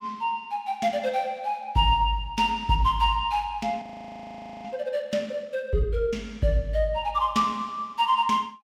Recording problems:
audio freezing; at 4 s for 1 s

